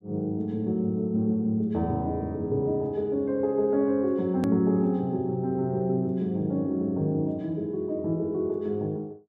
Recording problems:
click at an edit; at 4.5 s

